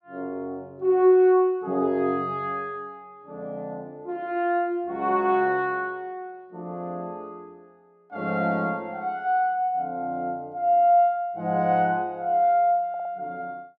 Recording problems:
stutter; at 13 s

